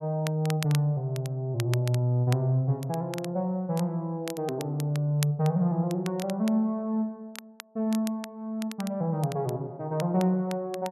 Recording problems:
crackle; vinyl, SNR 16 dB

